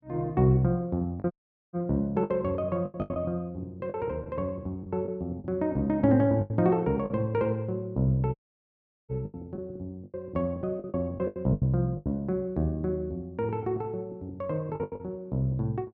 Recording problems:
lost packets; 8% of the sound replaced, filled with the last packet
audio cutting out; at 1.5 s and at 8.5 s for 0.5 s

